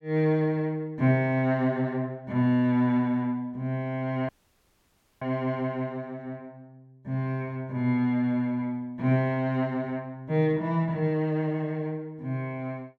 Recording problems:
audio cutting out; at 4.5 s for 1 s

